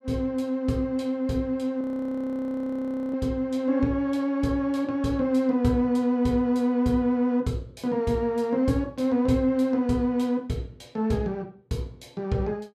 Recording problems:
frozen audio; at 2 s for 1.5 s

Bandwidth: 14.5 kHz